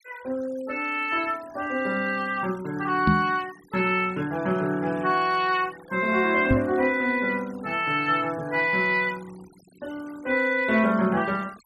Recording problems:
noise reduction artefacts; signal-to-artefact ratio 24 dB
knock on the microphone; at 3 s and at 6.5 s; peak +6 dB vs average level

